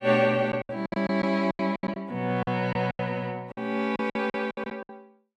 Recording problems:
lost packets; 17% of the sound replaced, filled with silence

